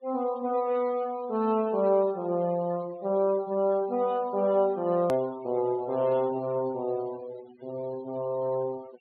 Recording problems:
treble cut off; nothing above 4.5 kHz
noise reduction artefacts; signal-to-artefact ratio 23 dB
click at an edit; at 5 s

